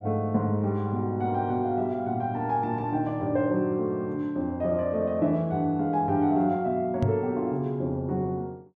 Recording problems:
microphone bump; at 7 s; peak +5 dB vs average level

